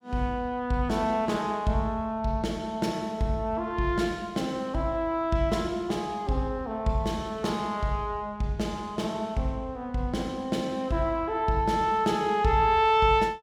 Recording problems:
none

